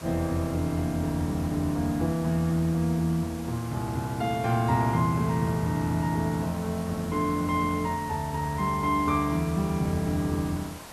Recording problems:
background hiss; slope -4 dB per octave, SNR 16 dB

